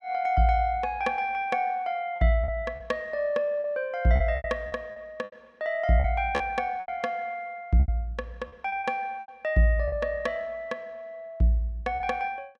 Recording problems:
lost packets; 8% of the sound replaced, filled with repeated pitch periods

